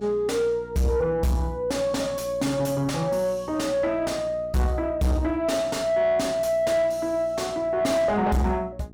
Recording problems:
distorted audio; soft clipping, signal-to-distortion ratio 7 dB
hum; 60 Hz, harmonics up to 780 Hz, SNR 21 dB

